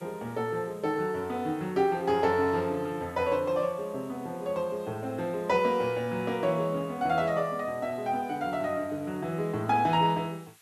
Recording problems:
background hiss; SNR 27 dB

